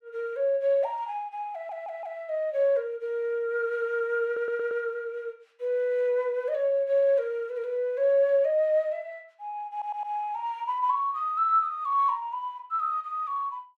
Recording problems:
stutter; at 1.5 s, at 4.5 s and at 9.5 s

